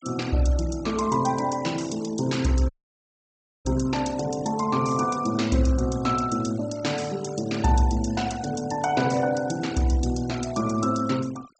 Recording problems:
low-pass filter; nothing above 8 kHz
denoising artefacts; signal-to-artefact ratio 18 dB
audio cutting out; at 2.5 s for 1 s

